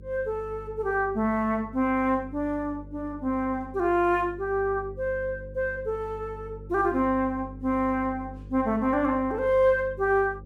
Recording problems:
hum; 50 Hz, harmonics up to 550 Hz, SNR 17 dB

